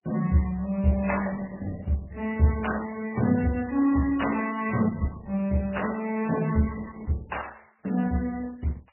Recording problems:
lossy compression; Opus, then MP3, log-spectral distance 5 dB, nothing above 2.9 kHz

